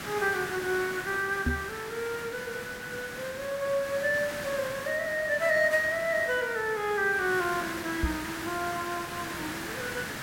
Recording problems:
hiss; SNR 8 dB
knock on the microphone; at 1.5 s and at 8 s; peak +4 dB vs average level

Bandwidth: 16.5 kHz